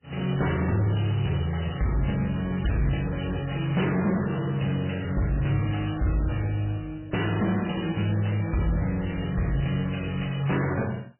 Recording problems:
lossy codec; MP3, log-spectral distance 9 dB, nothing above 3 kHz
distortion; soft clipping, signal-to-distortion ratio 11 dB

